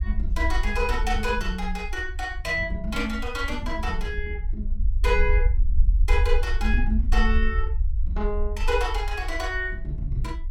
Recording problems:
rumble; below 56 Hz, SNR 0 dB

